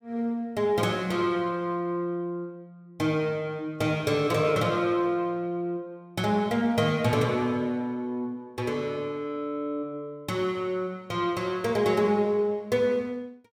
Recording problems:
none

